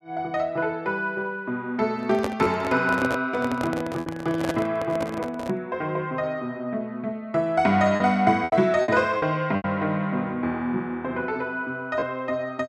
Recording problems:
lost packets; 3% of the sound replaced, filled with repeated pitch periods
microphone handling noise; from 2 to 5.5 s; peak +2 dB vs average level

